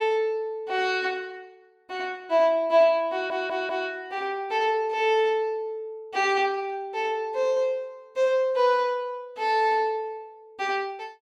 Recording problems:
audio stuttering; at 3 s

